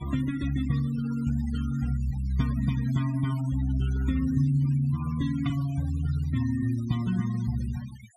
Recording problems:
denoising artefacts; signal-to-artefact ratio 19 dB

